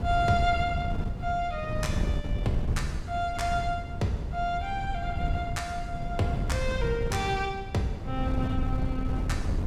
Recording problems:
wind on the microphone; below 140 Hz, SNR 2 dB

